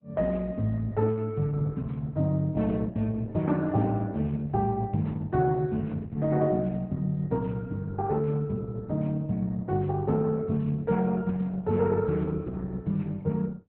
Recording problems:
lossy compression; Opus, log-spectral distance 2 dB, nothing above 4 kHz

